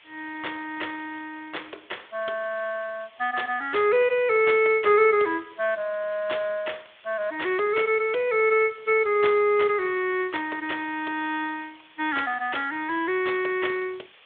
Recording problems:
phone line; 340 Hz to 3.5 kHz, Speex
hiss; SNR 27 dB

